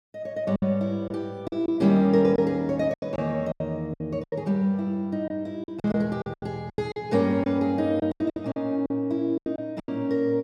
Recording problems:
packet loss; 12% of the sound replaced, filled with silence

